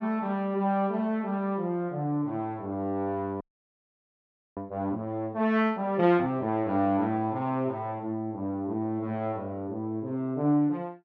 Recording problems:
frozen audio; at 3.5 s for 1 s

